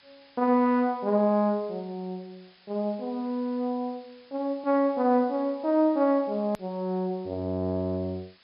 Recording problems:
treble cut off; nothing above 5.5 kHz
background hiss; SNR 29 dB
click at an edit; at 6.5 s

